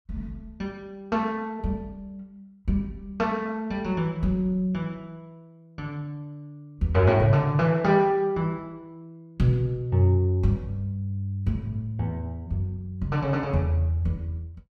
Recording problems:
none

